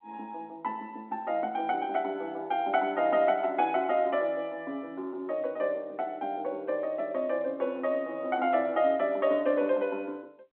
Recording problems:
phone line; 220 Hz to 3.6 kHz, G.711

